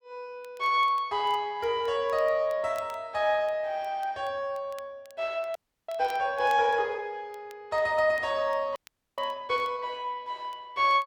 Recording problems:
crackle; vinyl, SNR 28 dB
audio freezing; at 5.5 s and at 9 s

